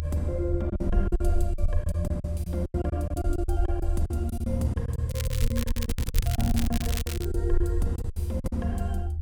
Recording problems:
mains hum; 60 Hz, harmonics up to 360 Hz, SNR 23 dB
rumble; below 80 Hz, SNR -2 dB
lost packets; 16% of the sound replaced, filled with silence
crackle; from 5 to 7.5 s; loose cable, SNR 5 dB

